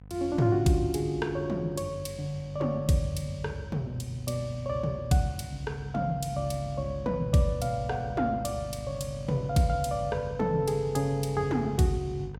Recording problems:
hum; 50 Hz, harmonics up to 1 kHz, SNR 15 dB

